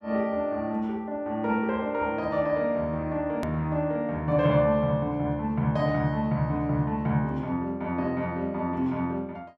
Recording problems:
click at an edit; at 3.5 s

